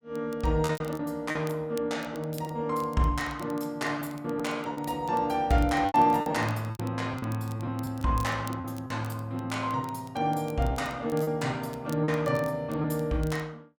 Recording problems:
crackling; vinyl, SNR 23 dB
packet loss; 7% of the sound replaced, filled with repeated pitch periods

